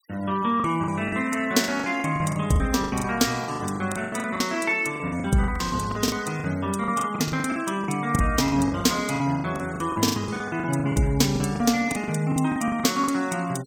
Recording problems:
noise reduction artefacts; signal-to-artefact ratio 21 dB
packet loss; 18% of the sound replaced, filled with the last packet

